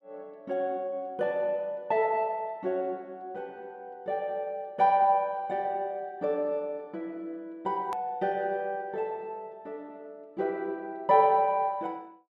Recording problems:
edit click; at 8 s

